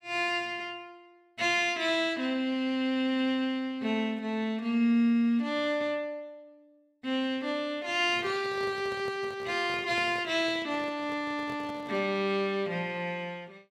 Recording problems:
microphone handling noise; from 8 to 12 s; peak -11 dB vs average level

